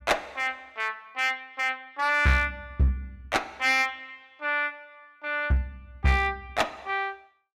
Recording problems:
distorted audio; hard clipping, uneven, signal-to-distortion ratio 11 dB

